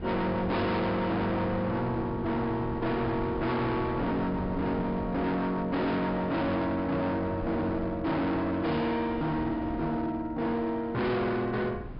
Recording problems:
treble cut off; nothing above 5.5 kHz
distortion; hard clipping, signal-to-distortion ratio 6 dB
wind on the microphone; below 370 Hz, SNR 11 dB

